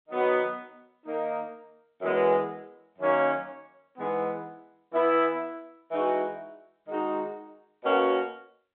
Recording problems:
telephone audio; 220 Hz to 3.7 kHz, G.711

